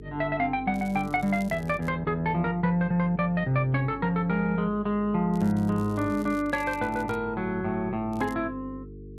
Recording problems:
electrical hum; 50 Hz, harmonics up to 450 Hz, SNR 16 dB
crackle; from 0.5 to 2 s, from 5.5 to 7 s and at 8 s; loose cable, SNR 25 dB

